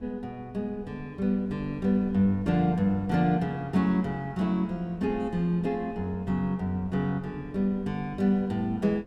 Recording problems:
wind on the microphone; below 210 Hz, SNR 21 dB

